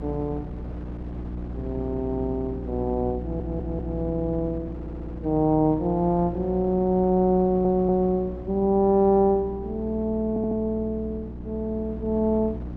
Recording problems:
hum; 60 Hz, harmonics up to 360 Hz, SNR 11 dB
wind noise; below 460 Hz, SNR 19 dB
audio stuttering; 4 times, first at 3 s

